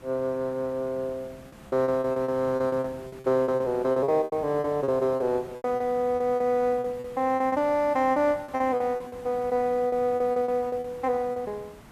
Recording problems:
hiss; slope -5 dB per octave, SNR 21 dB
packet loss; 14% of the sound replaced, filled with repeated pitch periods

